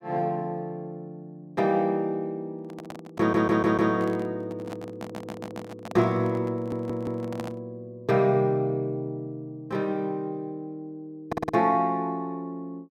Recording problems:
handling noise; from 2.5 to 7.5 s; peak -5 dB vs average level
stutter; 4 times, first at 3 s

